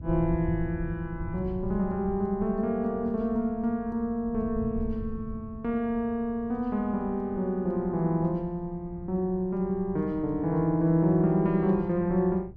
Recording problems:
wind noise; below 120 Hz, SNR 14 dB

